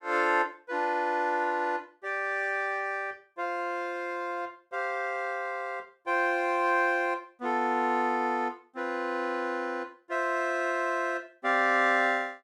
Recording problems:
none

